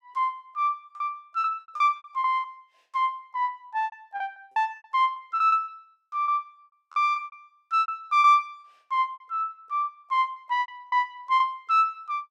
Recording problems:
lost packets; 17% of the sound replaced, filled with repeated pitch periods

